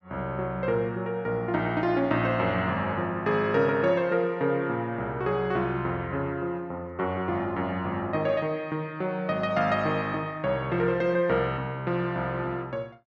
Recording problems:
none

